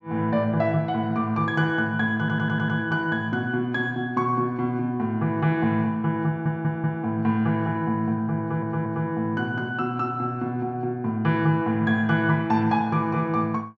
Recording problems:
treble missing; nothing above 8 kHz
stutter; at 2 s, at 6.5 s and at 8.5 s

